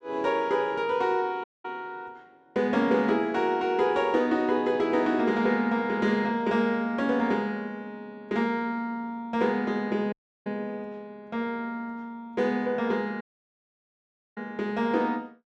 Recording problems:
audio cutting out; at 1.5 s, at 10 s and at 13 s for 1 s

